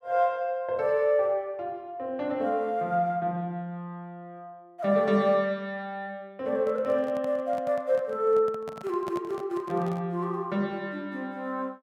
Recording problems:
microphone handling noise; from 6.5 to 10 s; peak -7 dB vs average level

